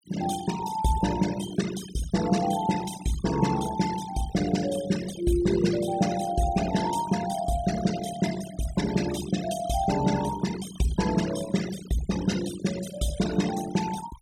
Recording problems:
denoising artefacts; signal-to-artefact ratio 11 dB

